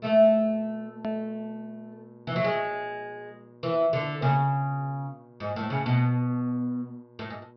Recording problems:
treble cut off; nothing above 5.5 kHz
hum; 60 Hz, harmonics up to 1.2 kHz, SNR 25 dB
edit click; at 1 s

